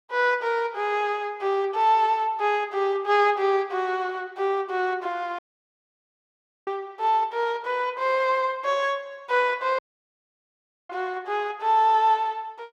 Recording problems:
dropout; at 5.5 s for 1.5 s and at 10 s for 1 s

